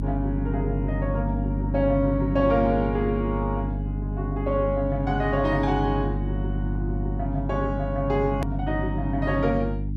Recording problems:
hum; 50 Hz, harmonics up to 300 Hz, SNR 3 dB
edit click; at 8.5 s

